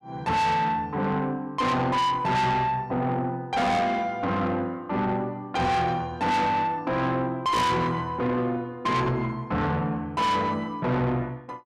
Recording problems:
distortion; soft clipping, signal-to-distortion ratio 6 dB

